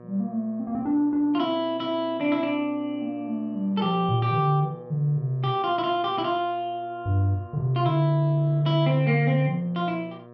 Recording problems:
hum; 60 Hz, harmonics up to 1.8 kHz, SNR 22 dB

